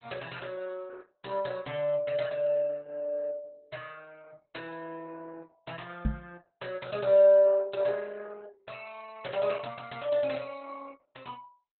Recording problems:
codec artefacts; Opus, log-spectral distance 5 dB, nothing above 4.1 kHz
knock on the microphone; at 6 s; peak +3 dB vs average level

